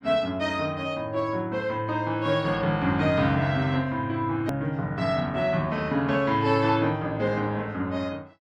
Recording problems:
click at an edit; at 4.5 s

